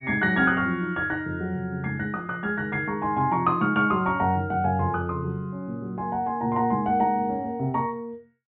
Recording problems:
treble cut off; nothing above 4 kHz

